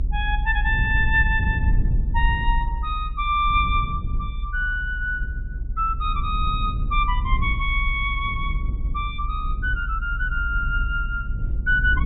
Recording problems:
treble cut off; nothing above 4 kHz
rumble; below 60 Hz, strongest tone 34 Hz, SNR 2 dB

